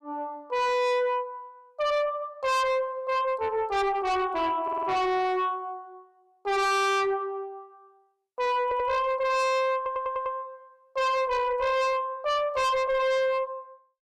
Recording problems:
distorted audio; soft clipping, signal-to-distortion ratio 5 dB
audio stuttering; at 4.5 s, at 8.5 s and at 10 s

